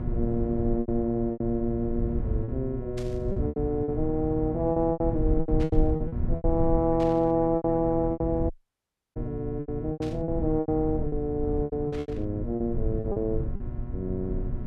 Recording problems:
electrical hum; 60 Hz, harmonics up to 1.3 kHz, SNR 10 dB
rumble; below 92 Hz, SNR 6 dB
packet loss; 12% of the sound replaced, filled with repeated pitch periods
burst of static; 5 times, first at 3 s; peak -11 dB vs average level
audio cutting out; at 8.5 s for 0.5 s

